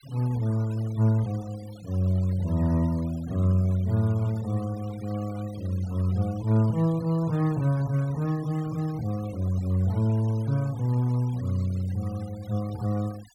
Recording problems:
noise reduction artefacts; signal-to-artefact ratio 23 dB

